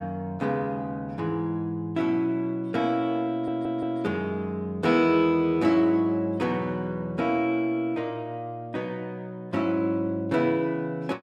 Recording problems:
audio stuttering; at 3.5 s

